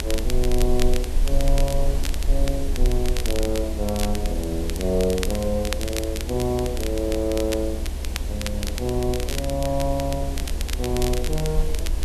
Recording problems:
hiss; SNR 9 dB
low-frequency rumble; below 66 Hz, SNR 2 dB
crackle; vinyl, SNR 8 dB

